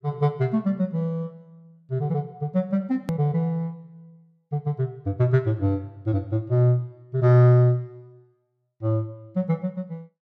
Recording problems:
hard cut with a click; at 3 s

